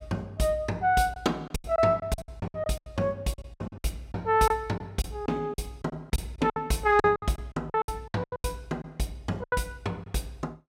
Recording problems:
lost packets; 15% of the sound replaced, filled with silence

